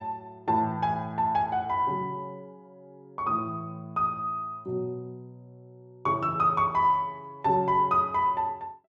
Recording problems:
none

